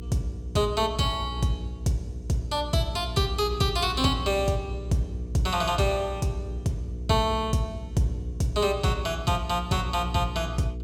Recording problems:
electrical hum; 60 Hz, harmonics up to 480 Hz, SNR 9 dB

